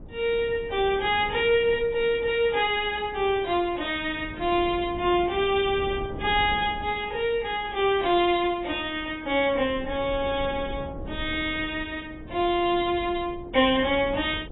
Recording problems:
lossy compression; AAC, log-spectral distance 3 dB, nothing above 3.6 kHz
wind noise; below 290 Hz, SNR 16 dB

